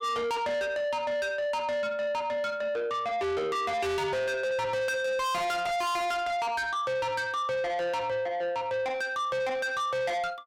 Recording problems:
distortion; soft clipping, signal-to-distortion ratio 6 dB

